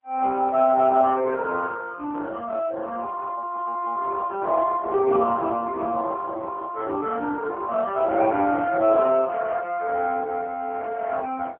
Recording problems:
phone line; 240 Hz to 3.3 kHz, AMR-NB

